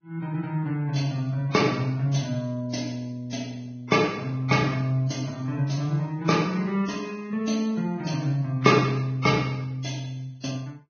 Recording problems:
codec artefacts; Vorbis, log-spectral distance 3 dB, nothing above 6.3 kHz

